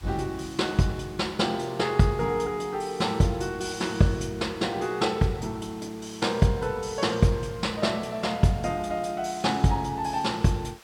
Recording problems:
hiss; slope -1 dB per octave, SNR 23 dB

